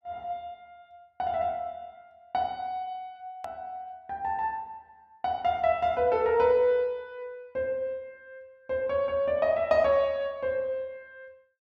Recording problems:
hard cut with a click; at 3.5 s

